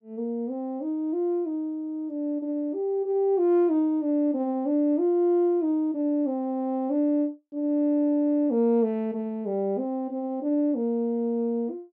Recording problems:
none

